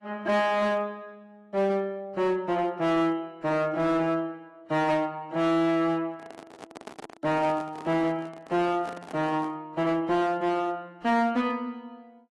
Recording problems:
lossy compression; AAC, log-spectral distance 2 dB, nothing above 11.6 kHz
distortion; hard clipping, uneven, signal-to-distortion ratio 11 dB
handling noise; from 6 to 9.5 s; peak -8 dB vs average level

